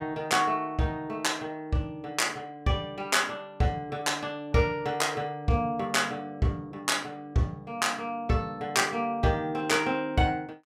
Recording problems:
none

